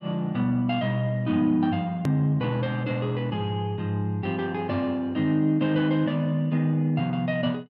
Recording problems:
hard cut with a click; at 2 s

